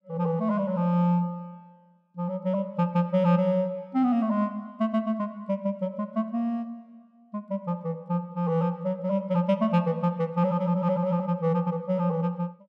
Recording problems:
none

